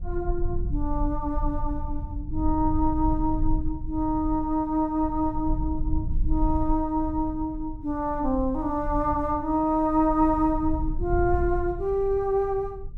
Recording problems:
rumble; below 60 Hz, strongest tone 22 Hz, SNR 7 dB

